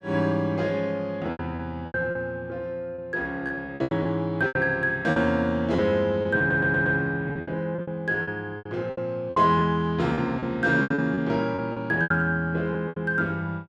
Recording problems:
packet loss; 12% of the sound replaced, filled with repeated pitch periods
stutter; at 6.5 s

